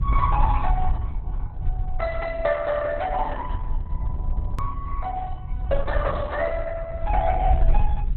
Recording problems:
lossy compression; Opus, log-spectral distance 2 dB, nothing above 4 kHz
low-frequency rumble; below 62 Hz, SNR 1 dB
edit click; at 4.5 s

